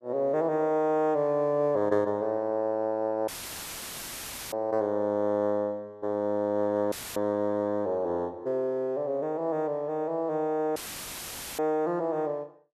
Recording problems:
audio cutting out; at 3.5 s for 1 s, at 7 s and at 11 s for 1 s; filled with static

